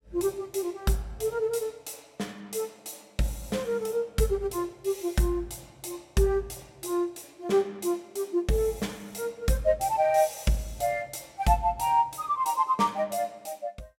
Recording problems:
none

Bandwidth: 16 kHz